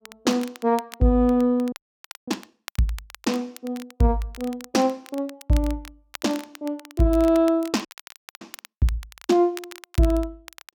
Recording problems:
crackle; vinyl, SNR 19 dB
frozen audio; at 1.5 s for 0.5 s and at 8 s for 0.5 s

